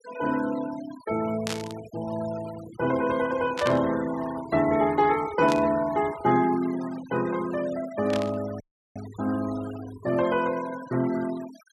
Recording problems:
noise reduction artefacts; signal-to-artefact ratio 17 dB
burst of static; 4 times, first at 1.5 s; peak -1 dB vs average level
audio cutting out; at 8.5 s

